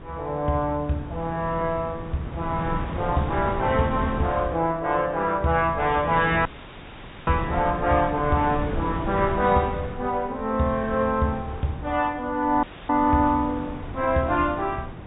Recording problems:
treble missing; nothing above 4 kHz
wind noise; below 440 Hz, SNR 10 dB
dropout; at 6.5 s for 1 s and at 13 s

